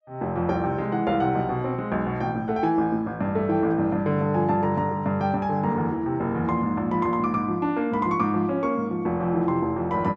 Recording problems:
none

